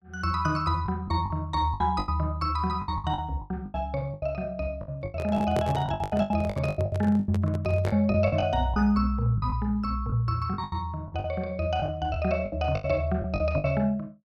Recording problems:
packet loss; 14% of the sound replaced, filled with the last packet
handling noise; from 5 to 8 s; peak 0 dB vs average level

